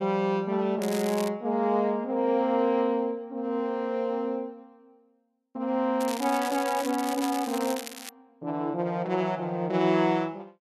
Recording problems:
crackle; at 1 s and from 6 to 8 s; loose cable, SNR 12 dB

